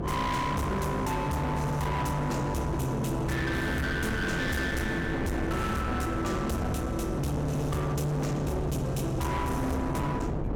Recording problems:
distortion; hard clipping, signal-to-distortion ratio 6 dB
hum; 50 Hz, harmonics up to 550 Hz, SNR 7 dB
wind noise; below 510 Hz, SNR 6 dB

